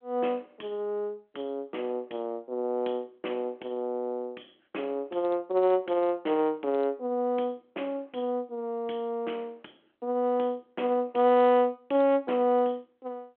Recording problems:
telephone audio; 260 Hz to 3.3 kHz, G.726

